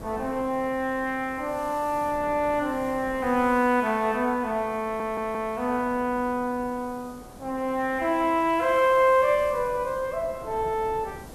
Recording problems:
background hiss; slope +3 dB per octave, SNR 26 dB
wind on the microphone; below 650 Hz, SNR 20 dB
stutter; at 5 s

